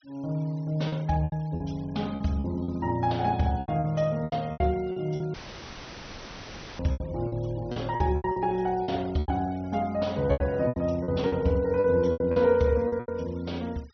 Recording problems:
low-pass filter; nothing above 6.2 kHz
noise reduction artefacts; signal-to-artefact ratio 26 dB
lost packets; 13% of the sound replaced, filled with repeated pitch periods
dropout; at 5.5 s for 1.5 s; filled with static

